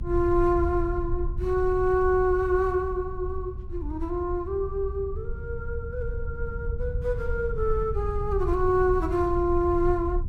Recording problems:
low-frequency rumble; below 76 Hz, SNR 7 dB

